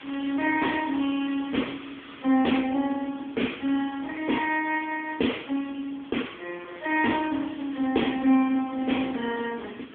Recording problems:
phone line; 220 Hz to 3.4 kHz, AMR-NB
hiss; SNR 19 dB
wind noise; below 370 Hz, SNR 19 dB

